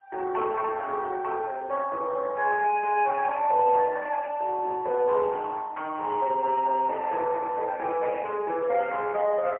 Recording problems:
phone line; 340 Hz to 3.3 kHz, AMR-NB, then MP3

